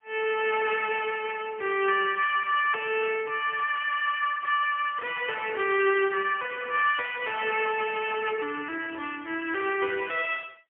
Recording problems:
phone line; 320 Hz to 3.3 kHz, AMR-NB, then MP3

